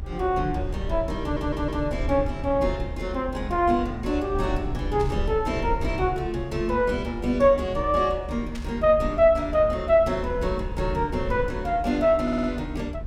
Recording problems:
rumble; below 74 Hz, SNR 9 dB
stutter; at 1 s and at 12 s
static burst; at 5 s and at 8.5 s; peak -12 dB vs average level

